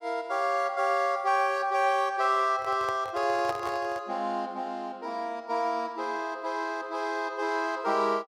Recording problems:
handling noise; from 2.5 to 4 s; peak -4 dB vs average level

